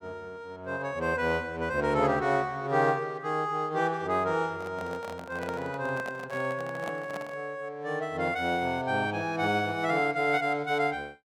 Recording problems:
handling noise; from 4.5 to 7.5 s; peak -5 dB vs average level

